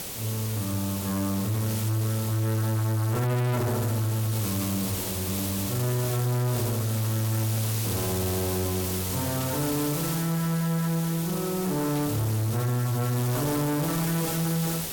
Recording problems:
distortion; hard clipping, signal-to-distortion ratio 7 dB
hiss; SNR 4 dB
static burst; at 9.5 s and at 12 s; peak -11 dB vs average level

